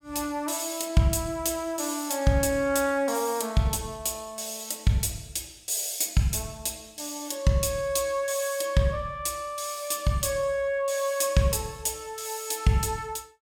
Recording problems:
none

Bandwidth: 17 kHz